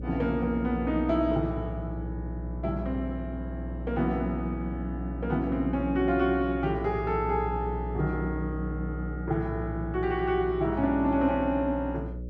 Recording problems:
hum; 60 Hz, harmonics up to 600 Hz, SNR 7 dB

